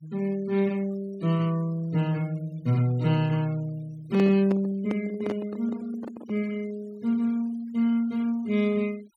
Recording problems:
noise reduction artefacts; signal-to-artefact ratio 24 dB
microphone handling noise; from 4 to 6.5 s; peak -2 dB vs average level

